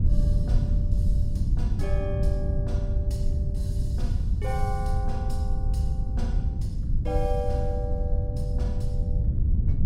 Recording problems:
wind noise; below 94 Hz, SNR -9 dB

